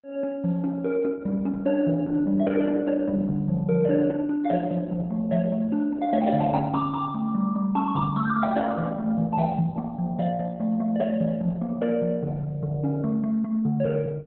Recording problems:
lossy codec; Opus, log-spectral distance 3 dB, nothing above 3.9 kHz

